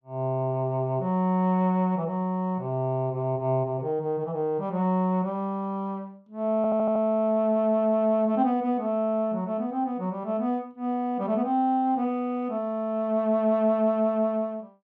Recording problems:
audio stuttering; at 6.5 s

